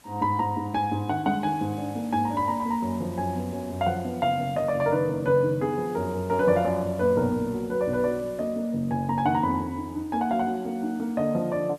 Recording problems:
hiss; slope -2 dB per octave, SNR 25 dB

